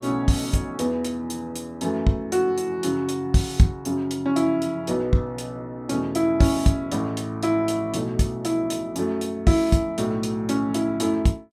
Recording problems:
none

